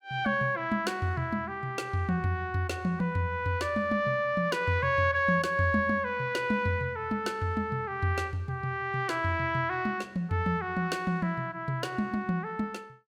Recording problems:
none

